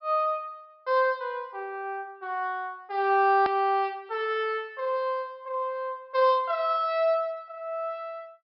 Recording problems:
treble missing; nothing above 5.4 kHz
hard cut with a click; at 3.5 s

